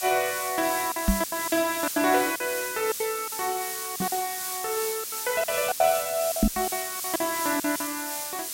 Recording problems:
hiss; SNR 3 dB
packet loss; 12% of the sound replaced, filled with silence
microphone bump; at 1 s, at 4 s and at 6.5 s; peak +9 dB vs average level
crackle; at 6.5 s; loose cable, SNR 26 dB

